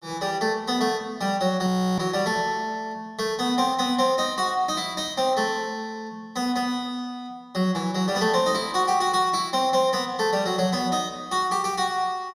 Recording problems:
frozen audio; at 1.5 s

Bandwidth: 15.5 kHz